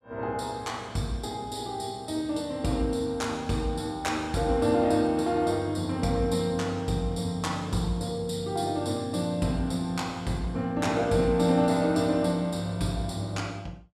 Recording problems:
none

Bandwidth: 14.5 kHz